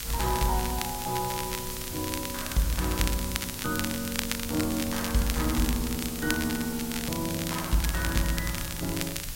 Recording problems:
hiss; slope +1 dB per octave, SNR 6 dB
rumble; below 100 Hz, SNR 14 dB
crackle; vinyl, SNR 6 dB

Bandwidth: 16 kHz